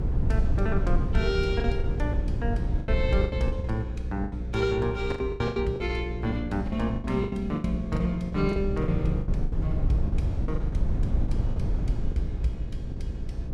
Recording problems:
hum; 60 Hz, harmonics up to 540 Hz, SNR 5 dB
low-frequency rumble; below 96 Hz, SNR 1 dB
lost packets; 13% of the sound replaced, filled with the last packet

